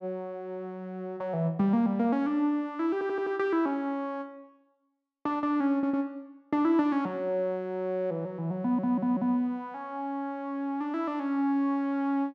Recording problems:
stutter; at 3 s, at 5.5 s and at 8.5 s

